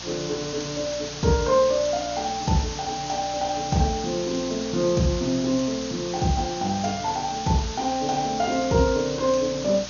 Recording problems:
treble cut off; nothing above 6.7 kHz
electrical hum; 60 Hz, harmonics up to 720 Hz, SNR 20 dB
hiss; SNR 9 dB

